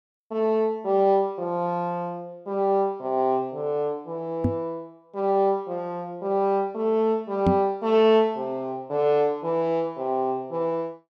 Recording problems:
microphone thump; at 4.5 s and at 7.5 s; peak +6 dB vs average level

